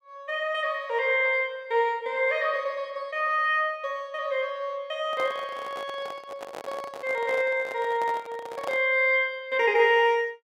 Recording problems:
microphone handling noise; from 5 to 9 s; peak -4 dB vs average level

